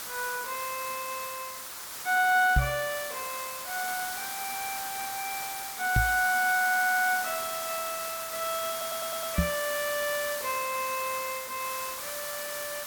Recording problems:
background hiss; SNR 5 dB
microphone bump; at 2.5 s, at 6 s and at 9.5 s; peak +8 dB vs average level
audio stuttering; at 6.5 s and at 8.5 s

